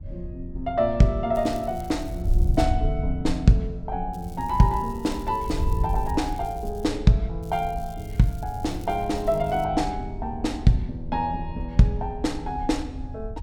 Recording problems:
wind on the microphone; below 76 Hz, SNR 8 dB
crackling; from 1.5 to 2.5 s, from 4 to 7 s and from 7.5 to 9.5 s; loose cable, SNR 26 dB

